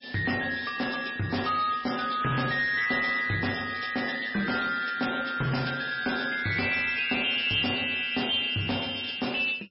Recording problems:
lossy compression; MP3, log-spectral distance 8 dB, nothing above 5.3 kHz
distorted audio; hard clipping, signal-to-distortion ratio 10 dB

